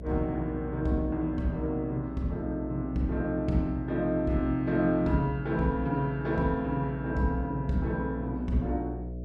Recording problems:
hum; 60 Hz, harmonics up to 660 Hz, SNR 10 dB

